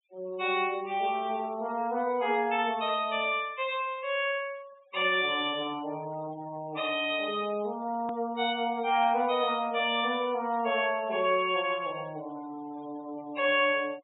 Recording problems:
treble cut off; nothing above 4 kHz
noise reduction artefacts; signal-to-artefact ratio 22 dB
click at an edit; at 8 s

